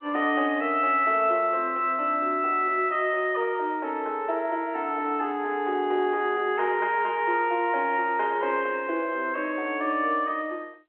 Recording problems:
telephone audio; 280 Hz to 3.3 kHz, G.711

